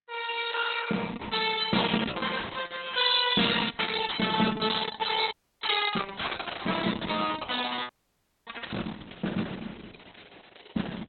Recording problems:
codec artefacts; Opus, log-spectral distance 8 dB, nothing above 4 kHz
audio freezing; at 5.5 s and at 8 s for 0.5 s

